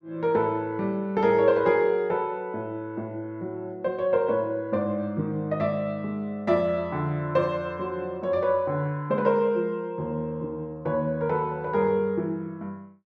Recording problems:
none

